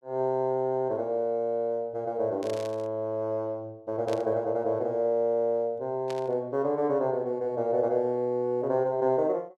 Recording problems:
burst of static; at 2.5 s, at 4 s and at 6 s; peak -9 dB vs average level

